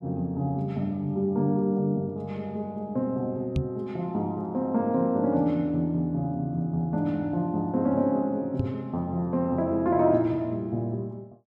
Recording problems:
knock on the microphone; at 3.5 s and at 8.5 s; peak +4 dB vs average level

